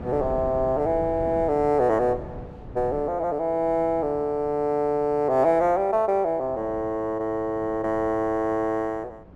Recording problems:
wind noise; below 350 Hz, SNR 17 dB

